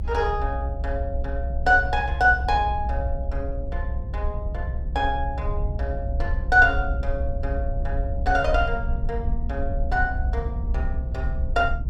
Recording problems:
low-frequency rumble; below 64 Hz, SNR 4 dB

